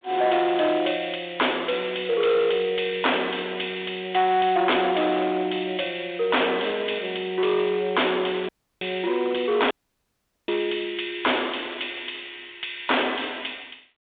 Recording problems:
telephone audio; 300 Hz to 3.7 kHz, G.726
distorted audio; hard clipping, signal-to-distortion ratio 6 dB
audio cutting out; at 8.5 s and at 9.5 s for 1 s

